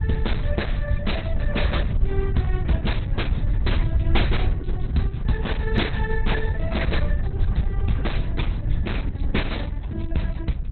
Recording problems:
codec artefacts; AAC, then Opus, log-spectral distance 3 dB, nothing above 4.1 kHz
low-frequency rumble; below 88 Hz, SNR -4 dB

